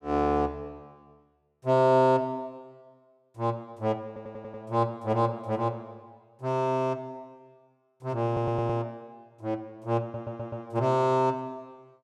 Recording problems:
stutter; at 4 s, at 8.5 s and at 10 s

